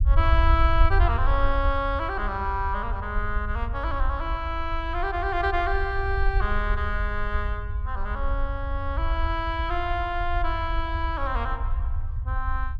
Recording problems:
rumble; below 66 Hz, SNR 1 dB

